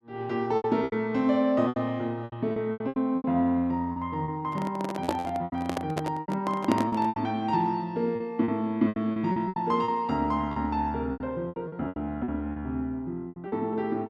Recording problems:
packet loss; 14% of the sound replaced, filled with repeated pitch periods
handling noise; from 4.5 to 7 s; peak +5 dB vs average level

